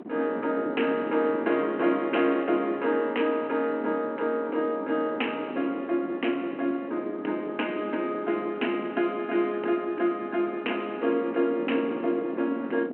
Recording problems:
telephone audio; 240 Hz to 3.2 kHz, G.726
wind noise; below 460 Hz, SNR 11 dB

